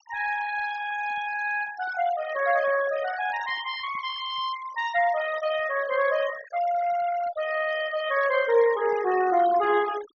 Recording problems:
treble missing; nothing above 6.6 kHz
noise reduction artefacts; signal-to-artefact ratio 14 dB

